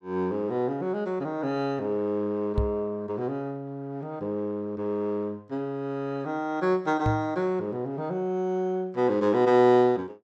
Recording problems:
microphone thump; at 2.5 s and at 7 s; peak +3 dB vs average level

